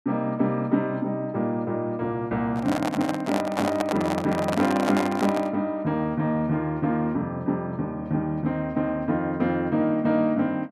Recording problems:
microphone handling noise; from 2.5 to 5.5 s; peak +3 dB vs average level

